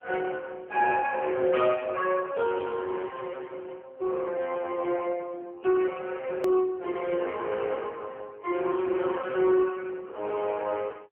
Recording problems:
phone line; 320 Hz to 2.5 kHz, AMR-NB
click at an edit; at 6.5 s

